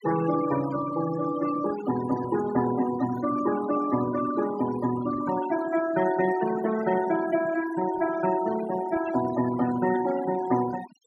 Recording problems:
noise reduction artefacts; signal-to-artefact ratio 11 dB

